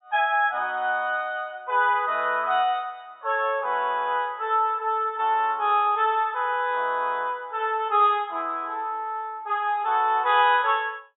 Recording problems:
treble cut off; nothing above 4 kHz

